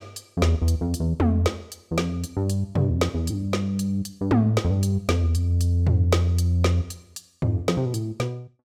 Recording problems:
none

